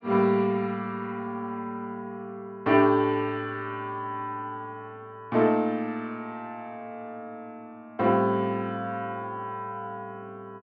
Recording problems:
none

